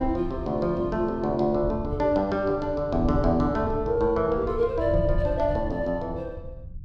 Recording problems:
rumble; below 100 Hz, SNR 10 dB

